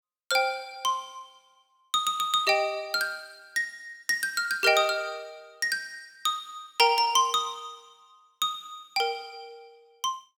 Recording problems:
none

